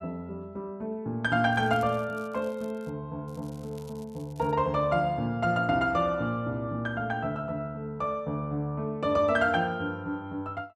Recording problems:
crackle; from 1.5 to 3 s and from 3.5 to 4.5 s; loose cable, SNR 28 dB

